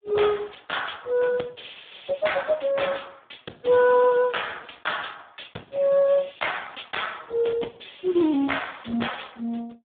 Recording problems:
telephone audio; 170 Hz to 3.6 kHz, Speex

